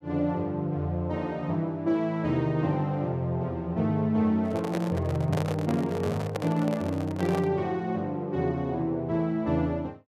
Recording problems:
handling noise; from 4.5 to 7.5 s; peak 0 dB vs average level

